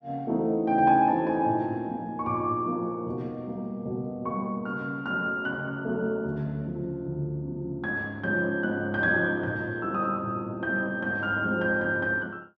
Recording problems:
none

